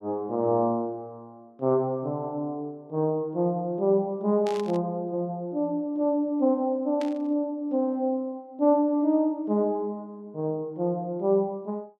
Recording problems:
static burst; at 4.5 s and at 7 s; peak -9 dB vs average level

